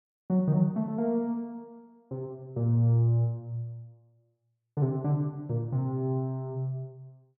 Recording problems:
none

